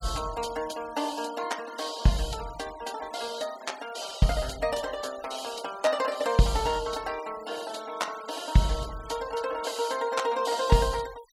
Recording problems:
denoising artefacts; signal-to-artefact ratio 17 dB

